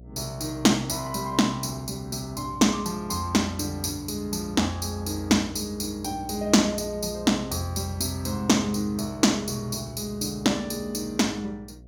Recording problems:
electrical hum; 60 Hz, harmonics up to 660 Hz, SNR 20 dB

